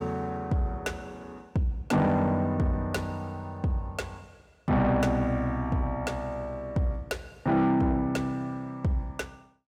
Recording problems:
distorted audio; soft clipping, signal-to-distortion ratio 12 dB

